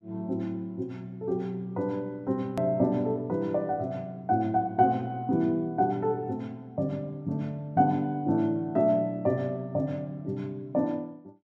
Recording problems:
edit click; at 2.5 s

